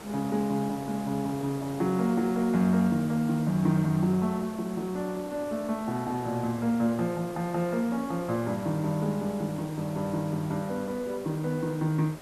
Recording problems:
hiss; slope -6 dB per octave, SNR 15 dB

